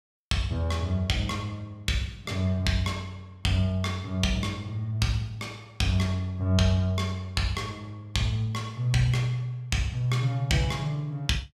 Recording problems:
none

